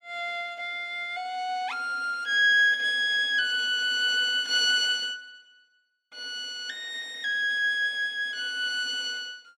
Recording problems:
none

